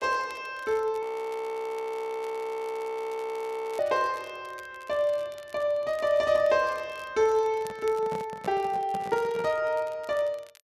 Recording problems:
crackling; vinyl, SNR 25 dB
audio freezing; at 1 s for 3 s
handling noise; from 7.5 to 9.5 s; peak -6 dB vs average level

